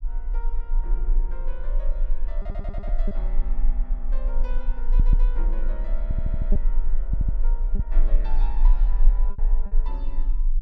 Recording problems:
low-frequency rumble; below 34 Hz, strongest tone 22 Hz, SNR -16 dB
lost packets; 3% of the sound replaced, filled with repeated pitch periods
stutter; 4 times, first at 2.5 s

